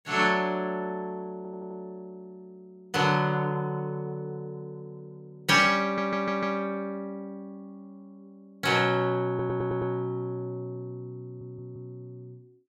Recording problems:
audio stuttering; 4 times, first at 1.5 s

